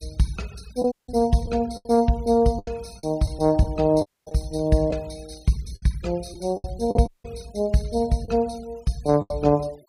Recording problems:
denoising artefacts; signal-to-artefact ratio 25 dB
lost packets; 7% of the sound replaced, filled with the last packet
audio cutting out; at 1 s, at 4 s and at 7 s

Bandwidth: 15.5 kHz